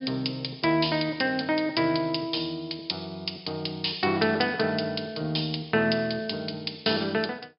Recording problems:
treble cut off; nothing above 5.5 kHz

